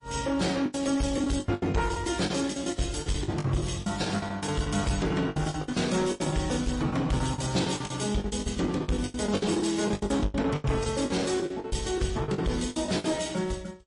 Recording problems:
lossy codec; AAC, then MP3, log-spectral distance 5 dB, nothing above 10.4 kHz
distortion; soft clipping, signal-to-distortion ratio 11 dB
packet loss; 19% of the sound replaced, filled with the last packet

